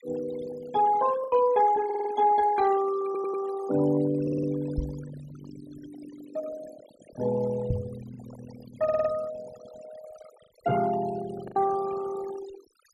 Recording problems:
noise reduction artefacts; signal-to-artefact ratio 16 dB
lost packets; 2% of the sound replaced, filled with the last packet
stutter; 4 times, first at 2 s
microphone bump; at 5 s and at 7.5 s; peak +2 dB vs average level

